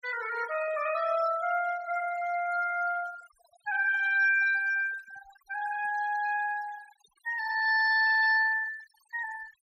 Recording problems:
denoising artefacts; signal-to-artefact ratio 16 dB

